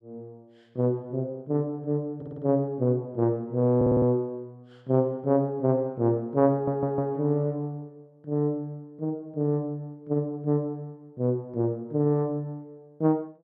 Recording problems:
audio stuttering; at 2 s, at 4 s and at 6.5 s

